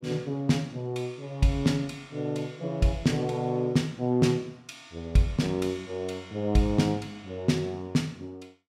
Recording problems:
none

